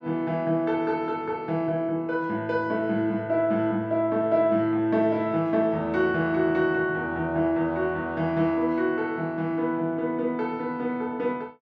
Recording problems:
none

